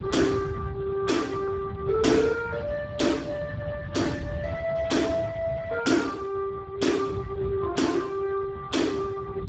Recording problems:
lossy codec; Speex, log-spectral distance 4 dB, nothing above 7.6 kHz
rumble; below 170 Hz, SNR 12 dB

